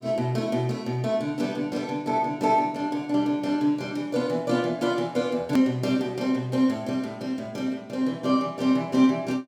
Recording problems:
edit click; at 5.5 s

